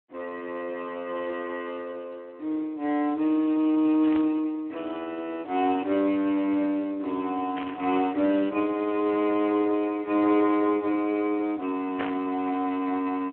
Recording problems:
telephone audio; 240 Hz to 3.2 kHz, Speex
static burst; at 4 s, at 7.5 s and at 12 s; peak -1 dB vs average level

